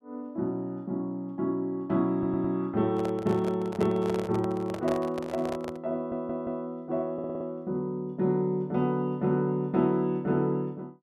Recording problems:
stutter; at 2 s, at 6 s and at 7 s
handling noise; from 3 to 6 s; peak -2 dB vs average level

